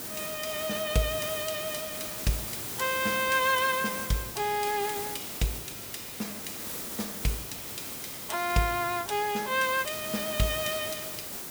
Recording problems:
background hiss; SNR 5 dB

